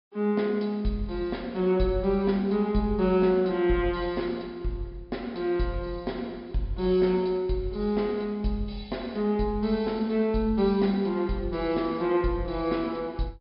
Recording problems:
treble missing; nothing above 5.5 kHz

